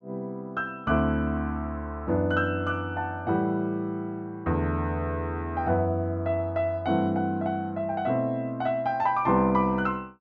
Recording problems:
none

